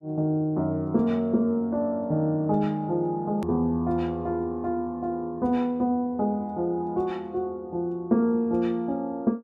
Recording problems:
hard cut with a click; at 3.5 s

